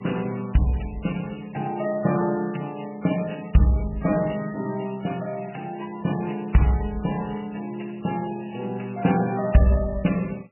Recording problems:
lossy codec; MP3, log-spectral distance 8 dB, nothing above 2.9 kHz

